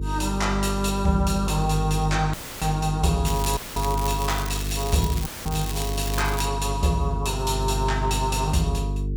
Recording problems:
hum; 50 Hz, harmonics up to 450 Hz, SNR 4 dB
dropout; at 2.5 s, at 3.5 s and at 5.5 s; filled with static
crackling; from 3.5 to 6.5 s; loose cable, SNR 9 dB

